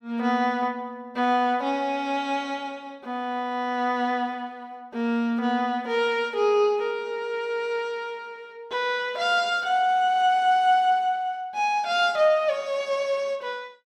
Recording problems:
none

